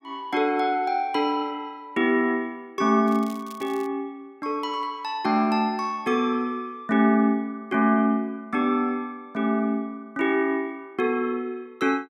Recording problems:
crackle; at 3 s; loose cable, SNR 24 dB

